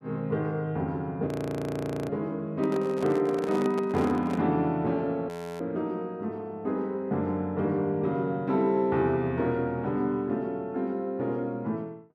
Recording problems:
audio freezing; at 1.5 s for 1 s and at 5.5 s
handling noise; from 2.5 to 4.5 s; peak -3 dB vs average level

